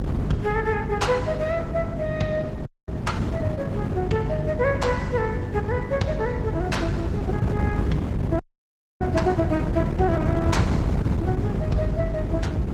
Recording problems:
lossy compression; Opus, log-spectral distance 2 dB
hum; 50 Hz, harmonics up to 400 Hz, SNR 6 dB
wind on the microphone; below 230 Hz, SNR 0 dB
frozen audio; at 2.5 s and at 8.5 s for 0.5 s

